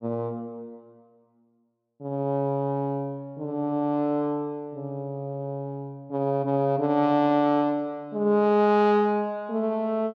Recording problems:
none

